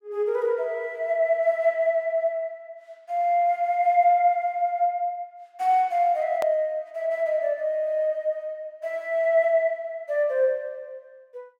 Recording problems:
click at an edit; at 6.5 s

